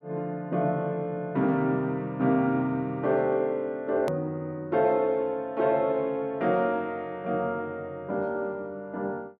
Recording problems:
click at an edit; at 4 s

